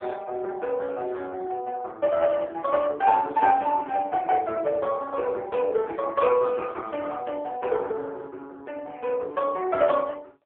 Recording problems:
telephone audio; 340 Hz to 3 kHz, AMR-NB

